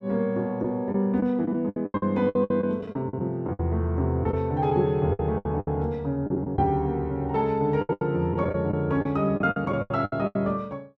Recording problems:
lost packets; 14% of the sound replaced, filled with the last packet

